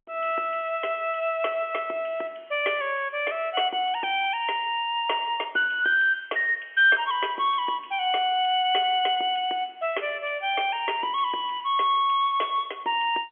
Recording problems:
phone line; 300 Hz to 3.3 kHz, G.711

